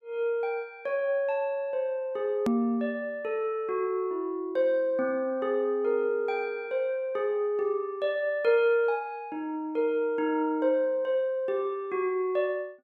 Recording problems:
edit click; at 2.5 s

